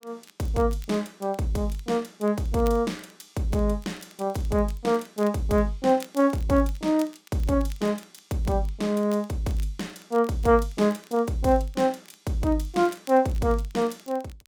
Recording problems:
crackling; vinyl, SNR 26 dB

